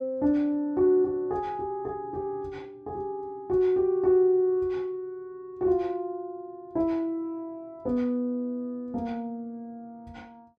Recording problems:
none

